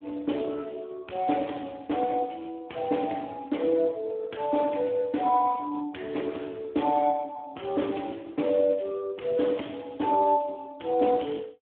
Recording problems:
telephone audio; 130 Hz to 3.5 kHz, Speex

